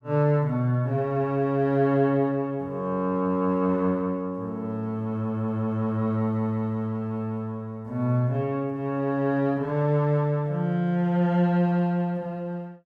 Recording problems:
none

